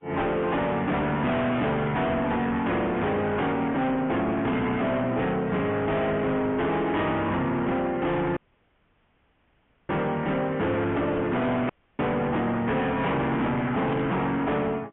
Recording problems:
treble missing; nothing above 3.4 kHz
codec artefacts; MP3, then G.722, log-spectral distance 2 dB
distortion; soft clipping, signal-to-distortion ratio 7 dB
static burst; 4 times, first at 1.5 s; peak -13 dB vs average level
audio cutting out; at 8.5 s for 1.5 s and at 12 s

